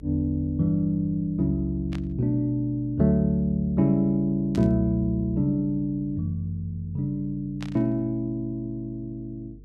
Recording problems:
electrical hum; 50 Hz, harmonics up to 450 Hz, SNR 21 dB
burst of static; at 2 s, at 4.5 s and at 7.5 s; peak -10 dB vs average level

